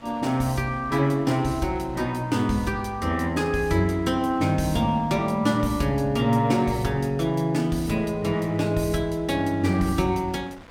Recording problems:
wind noise; below 1.7 kHz, SNR 25 dB

